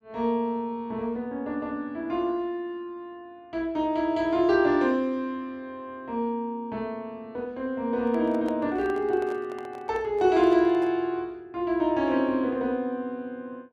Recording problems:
handling noise; from 8 to 11 s; peak -8 dB vs average level

